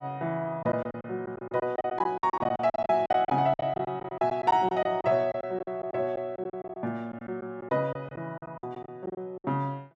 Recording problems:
lost packets; 15% of the sound replaced, filled with silence

